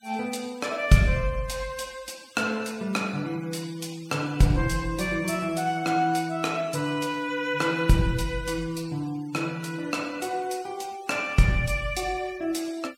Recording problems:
noise reduction artefacts; signal-to-artefact ratio 21 dB

